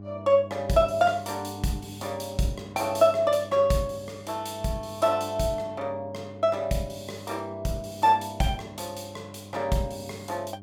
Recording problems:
hum; 50 Hz, harmonics up to 800 Hz, SNR 16 dB

